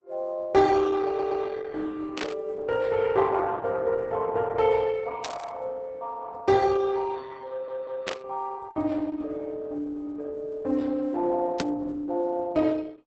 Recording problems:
lossy compression; Opus, log-spectral distance 3 dB, nothing above 7.8 kHz
stutter; at 1 s and at 7.5 s
static burst; 4 times, first at 2 s; peak 0 dB vs average level

